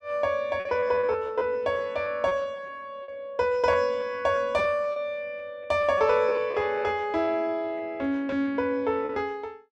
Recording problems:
lost packets; 8% of the sound replaced, filled with repeated pitch periods

